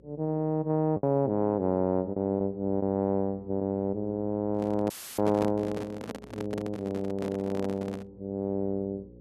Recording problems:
hum; 60 Hz, harmonics up to 540 Hz, SNR 25 dB
packet loss; 1.5% of the sound replaced, filled with the last packet
microphone handling noise; from 4.5 to 8 s; peak -2 dB vs average level
dropout; at 5 s; filled with static

